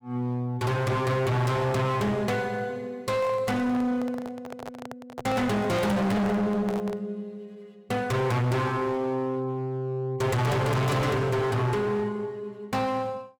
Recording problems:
distortion; hard clipping, uneven, signal-to-distortion ratio 5 dB
handling noise; from 3 to 7 s; peak -4 dB vs average level

